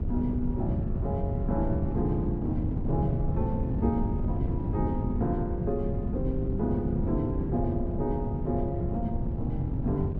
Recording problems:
wind noise; below 160 Hz, SNR 0 dB

